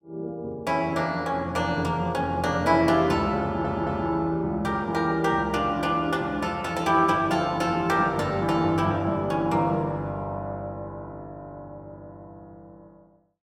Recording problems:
audio stuttering; at 3.5 s

